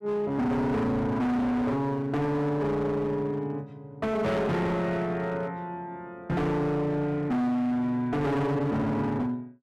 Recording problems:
distortion; hard clipping, signal-to-distortion ratio 6 dB

